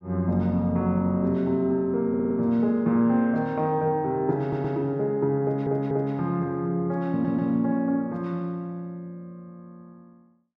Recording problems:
audio stuttering; 4 times, first at 2 s

